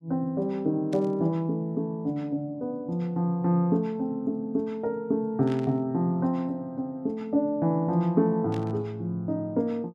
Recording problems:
burst of static; at 1 s, at 5.5 s and at 8.5 s; peak -12 dB vs average level

